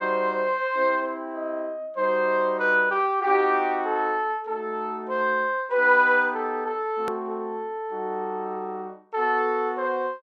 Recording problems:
hard cut with a click; at 7 s

